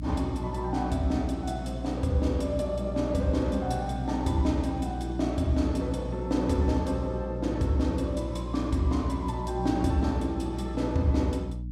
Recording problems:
hum; 60 Hz, harmonics up to 300 Hz, SNR 7 dB

